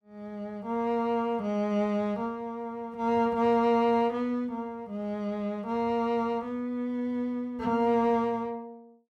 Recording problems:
none

